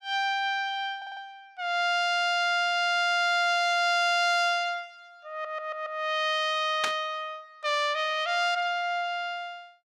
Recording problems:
stutter; at 1 s and at 5.5 s
burst of static; at 7 s; peak +1 dB vs average level

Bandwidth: 17 kHz